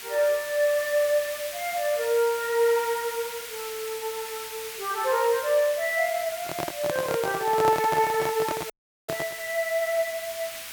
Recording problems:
background hiss; SNR 10 dB
microphone handling noise; from 6.5 to 9.5 s; peak +1 dB vs average level
audio cutting out; at 8.5 s

